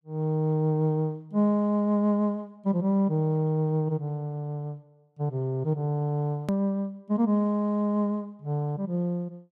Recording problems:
edit click; at 6.5 s

